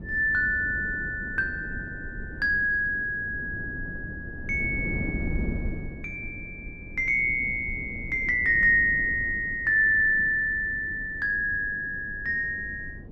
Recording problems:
wind on the microphone; below 240 Hz, SNR 14 dB

